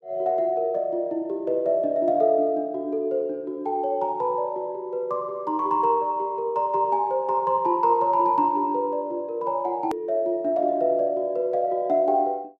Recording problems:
click at an edit; at 10 s

